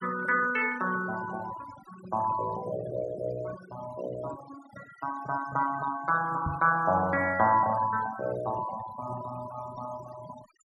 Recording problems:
noise reduction artefacts; signal-to-artefact ratio 14 dB
knock on the microphone; at 6.5 s; peak -1 dB vs average level

